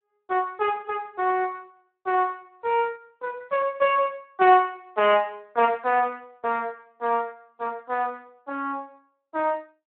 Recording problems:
phone line; 260 Hz to 3.2 kHz, Speex

